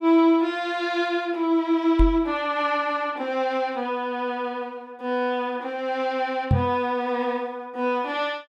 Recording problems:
knock on the microphone; at 2 s and at 6.5 s; peak +7 dB vs average level

